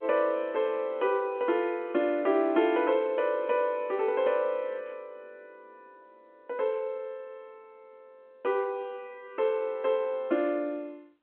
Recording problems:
phone line; 190 Hz to 3.6 kHz, G.711

